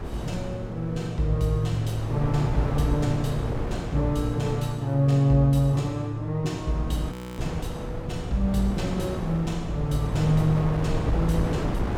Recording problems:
wind noise; below 400 Hz, SNR 7 dB
frozen audio; at 7 s

